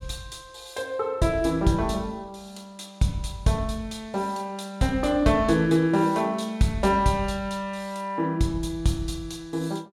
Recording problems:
none

